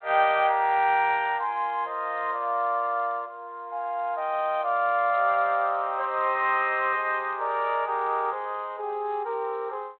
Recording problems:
telephone audio; 340 Hz to 3.7 kHz, G.726

